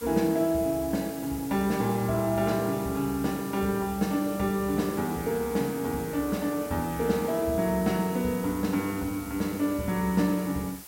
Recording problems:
background hiss; slope -1 dB per octave, SNR 15 dB

